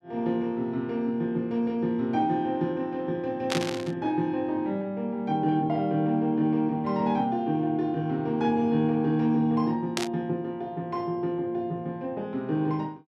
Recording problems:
static burst; at 3.5 s and at 10 s; peak +2 dB vs average level

